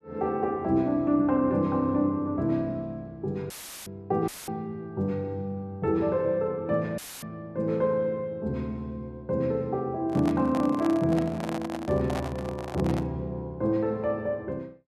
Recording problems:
dropout; at 3.5 s, at 4.5 s and at 7 s; filled with static
handling noise; from 10 to 13 s; peak -3 dB vs average level

